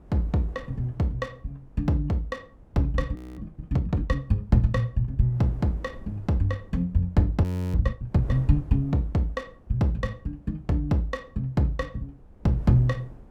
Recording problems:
wind on the microphone; below 230 Hz, SNR 22 dB
audio freezing; at 3 s and at 7.5 s

